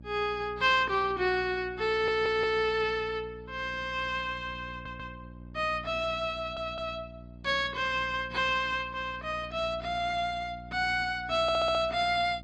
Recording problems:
lossy compression; MP3, then AAC, log-spectral distance 2 dB
electrical hum; 60 Hz, harmonics up to 600 Hz, SNR 18 dB
audio stuttering; 4 times, first at 2 s

